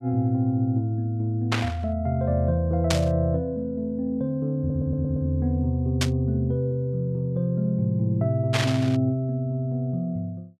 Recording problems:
burst of static; 4 times, first at 1.5 s; peak +3 dB vs average level
stutter; at 4.5 s

